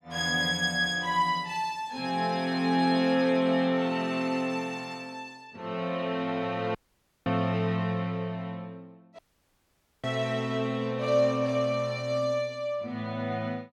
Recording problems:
dropout; at 7 s for 0.5 s and at 9 s for 1 s

